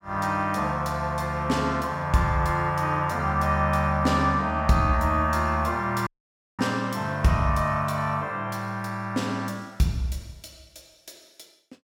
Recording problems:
dropout; at 6 s for 0.5 s

